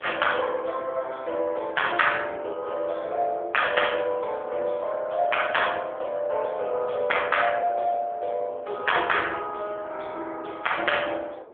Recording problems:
phone line; 340 Hz to 3.4 kHz, AMR-NB
wind noise; below 740 Hz, SNR 23 dB

